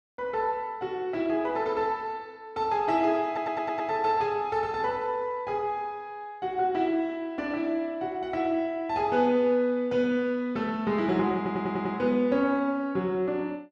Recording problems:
stutter; at 3.5 s and at 11 s

